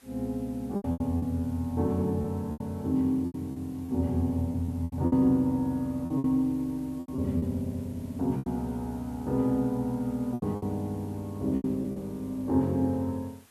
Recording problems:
background hiss; slope -2 dB per octave, SNR 27 dB
packet loss; 9% of the sound replaced, filled with repeated pitch periods

